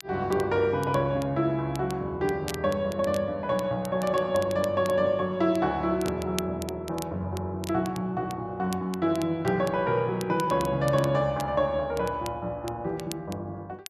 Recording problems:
crackle; vinyl, SNR 18 dB

